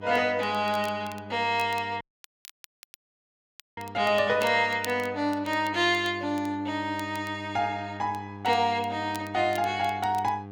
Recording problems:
electrical hum; 50 Hz, harmonics up to 1.3 kHz, SNR 16 dB
crackling; vinyl, SNR 22 dB
dropout; at 2 s for 2 s

